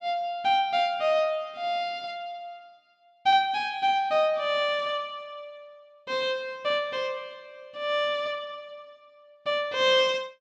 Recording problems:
none

